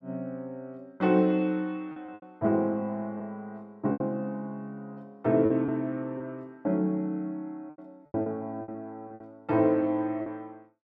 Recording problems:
lost packets; 7% of the sound replaced, filled with repeated pitch periods

